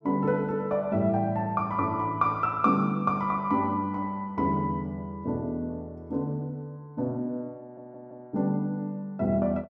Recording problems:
audio stuttering; at 7.5 s

